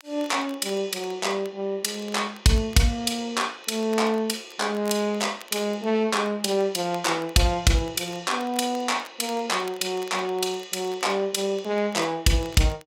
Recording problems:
crackle; vinyl, SNR 24 dB

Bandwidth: 16 kHz